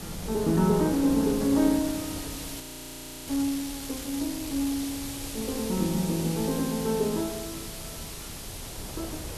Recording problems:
hiss; slope +2 dB per octave, SNR 10 dB
wind noise; below 470 Hz, SNR 15 dB
audio freezing; at 2.5 s for 0.5 s

